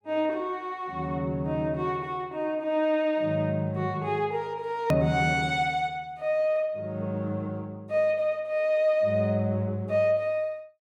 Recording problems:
hard cut with a click; at 5 s

